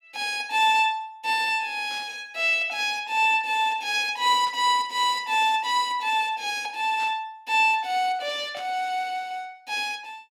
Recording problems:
burst of static; 4 times, first at 2 s; peak -14 dB vs average level

